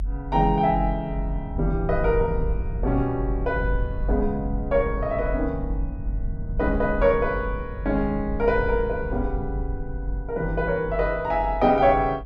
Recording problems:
low-frequency rumble; below 58 Hz, strongest tone 46 Hz, SNR 6 dB

